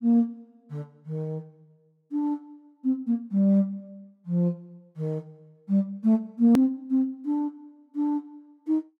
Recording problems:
edit click; at 6.5 s

